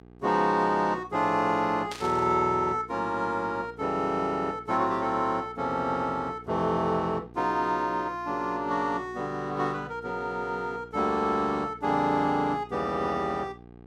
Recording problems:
electrical hum; 60 Hz, harmonics up to 1.3 kHz, SNR 22 dB
burst of static; at 2 s; peak -6 dB vs average level

